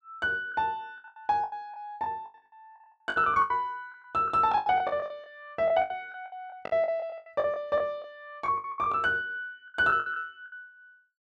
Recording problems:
packet loss; 18% of the sound replaced, filled with the last packet

